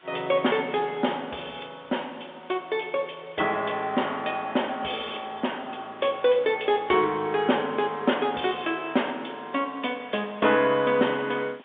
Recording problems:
telephone audio; 280 Hz to 3.6 kHz, G.711
background hiss; SNR 27 dB

